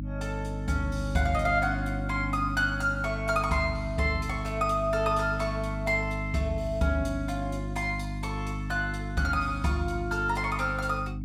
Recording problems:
electrical hum; 50 Hz, harmonics up to 300 Hz, SNR 5 dB

